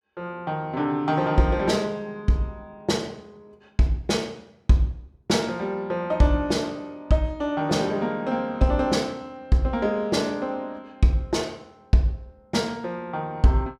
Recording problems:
none

